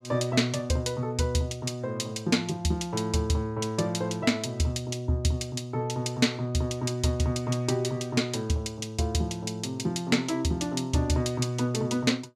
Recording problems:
none

